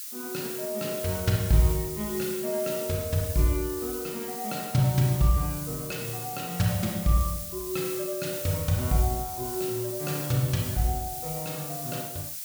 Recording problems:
hiss; slope +6 dB per octave, SNR 6 dB

